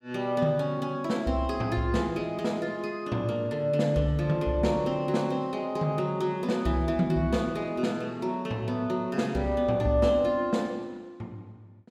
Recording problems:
none

